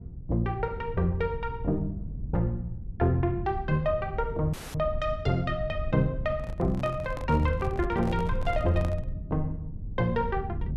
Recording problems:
low-frequency rumble; below 110 Hz, SNR 8 dB
audio cutting out; at 4.5 s
handling noise; from 6.5 to 9 s; peak -6 dB vs average level

